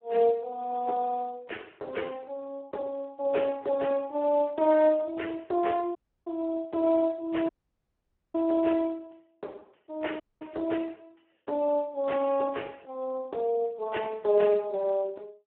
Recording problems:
telephone audio; 280 Hz to 3.3 kHz, Speex
dropout; at 6 s, at 7.5 s for 1 s and at 10 s

